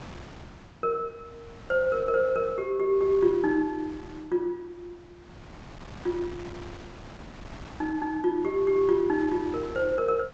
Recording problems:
treble cut off; nothing above 8 kHz
wind noise; below 1.1 kHz, SNR 19 dB

